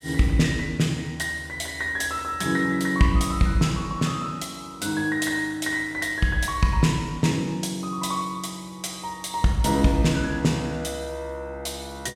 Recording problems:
none

